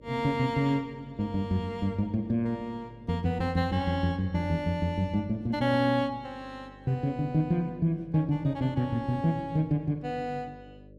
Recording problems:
electrical hum; 50 Hz, harmonics up to 600 Hz, SNR 23 dB

